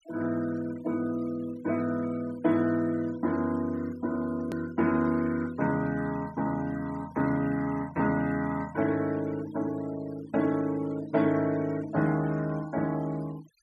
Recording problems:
denoising artefacts; signal-to-artefact ratio 21 dB
click at an edit; at 4.5 s

